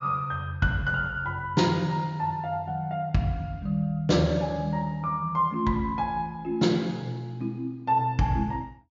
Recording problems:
low-pass filter; nothing above 7.3 kHz

